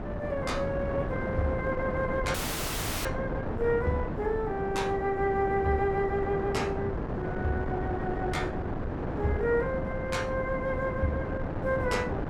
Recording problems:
wind noise; below 550 Hz, SNR 3 dB
dropout; at 2.5 s for 0.5 s

